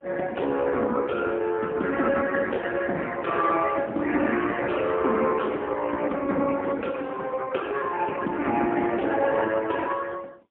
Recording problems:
phone line; 220 Hz to 2.6 kHz, AMR-NB, then MP3

